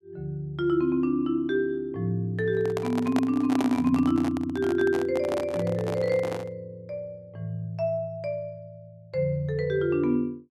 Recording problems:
microphone handling noise; from 2.5 to 6.5 s; peak +1 dB vs average level

